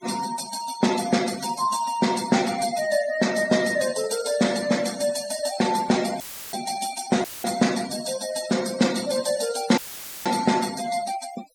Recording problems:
noise reduction artefacts; signal-to-artefact ratio 12 dB
audio cutting out; at 6 s, at 7 s and at 10 s; filled with static

